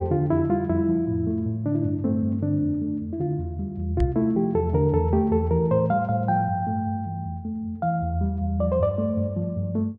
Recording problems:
microphone thump; at 4 s; peak +4 dB vs average level

